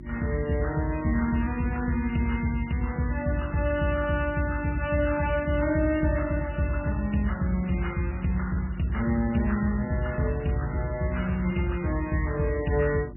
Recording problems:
lossy compression; MP3, log-spectral distance 4 dB, nothing above 2.7 kHz
electrical hum; 50 Hz, harmonics up to 350 Hz, SNR 16 dB

